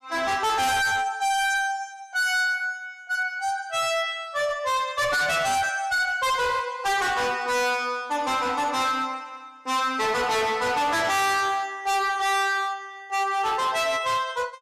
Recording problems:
distortion; hard clipping, signal-to-distortion ratio 6 dB

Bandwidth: 14.5 kHz